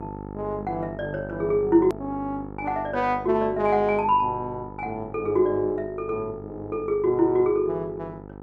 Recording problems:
electrical hum; 50 Hz, harmonics up to 1.4 kHz, SNR 14 dB
hard cut with a click; at 2 s

